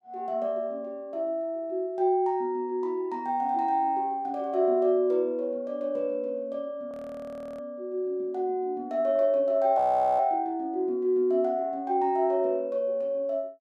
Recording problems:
audio freezing; at 7 s for 0.5 s and at 10 s

